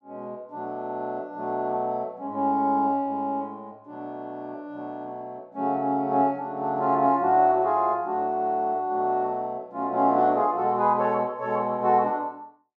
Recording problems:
none

